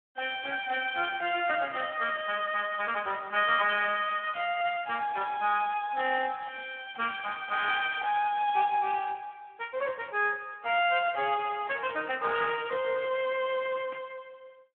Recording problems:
telephone audio; 240 Hz to 3.4 kHz, Speex
static burst; 5 times, first at 2 s; peak -14 dB vs average level

